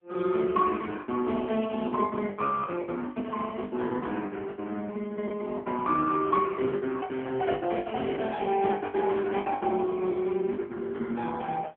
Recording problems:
phone line; 170 Hz to 3.3 kHz, AMR-NB
packet loss; 16% of the sound replaced, filled with the last packet

